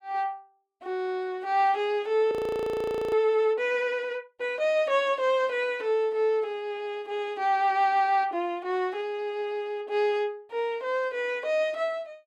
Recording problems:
audio freezing; at 2.5 s for 1 s

